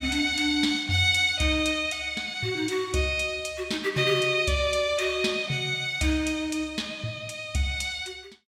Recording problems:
none

